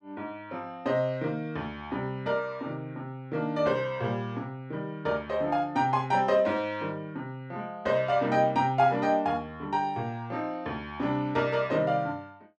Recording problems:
none

